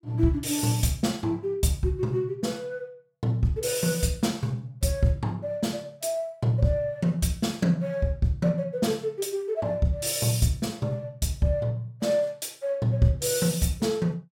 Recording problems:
none

